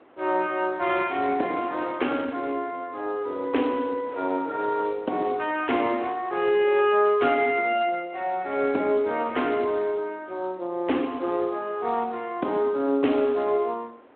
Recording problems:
telephone audio; 240 Hz to 3.3 kHz, Speex
wind on the microphone; below 1 kHz, SNR 24 dB

